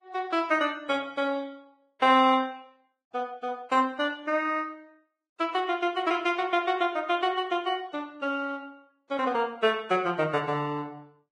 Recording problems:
lossy compression; Vorbis, log-spectral distance 2 dB

